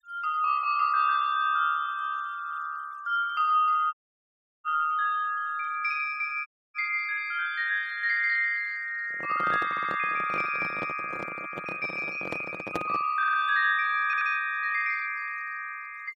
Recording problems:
noise reduction artefacts; signal-to-artefact ratio 26 dB
dropout; at 4 s for 0.5 s and at 6.5 s
handling noise; from 9 to 13 s; peak 0 dB vs average level
audio stuttering; at 9.5 s, at 13 s and at 14 s

